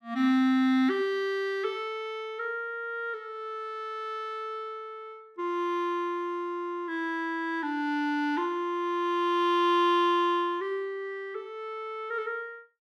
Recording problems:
none

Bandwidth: 15 kHz